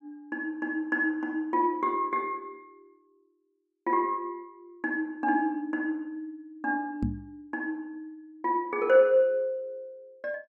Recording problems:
microphone bump; at 7 s; peak +2 dB vs average level

